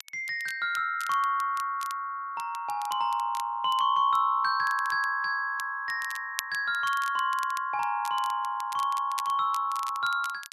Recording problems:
crackling; vinyl, SNR 17 dB

